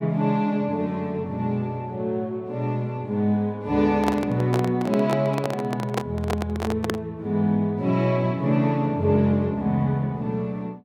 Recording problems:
handling noise; from 4 to 7 s; peak +2 dB vs average level

